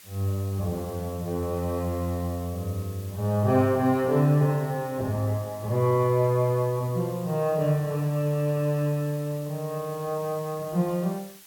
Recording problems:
hiss; slope +2 dB per octave, SNR 21 dB

